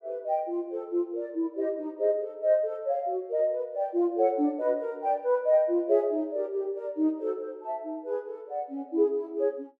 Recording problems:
none

